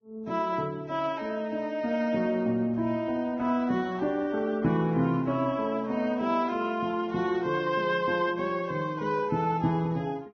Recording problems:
lossy codec; Vorbis, log-spectral distance 2 dB, nothing above 5.8 kHz

